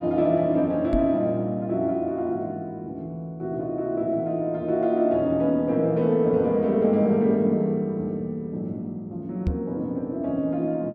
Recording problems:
knock on the microphone; at 1 s and at 9.5 s; peak +2 dB vs average level

